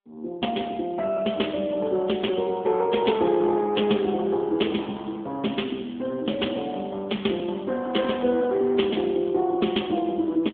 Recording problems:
telephone audio; 220 Hz to 3.5 kHz, AMR-NB

